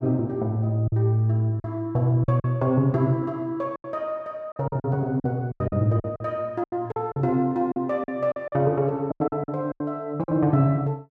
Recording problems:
lost packets; 11% of the sound replaced, filled with silence

